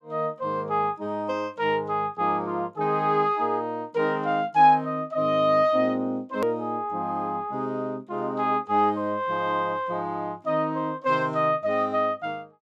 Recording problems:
click at an edit; at 6.5 s

